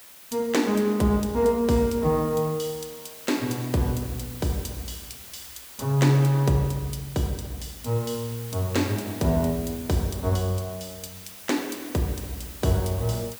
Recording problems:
background hiss; slope 0 dB per octave, SNR 16 dB

